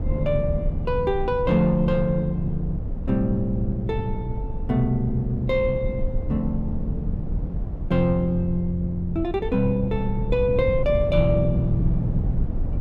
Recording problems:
low-frequency rumble; below 110 Hz, SNR 5 dB

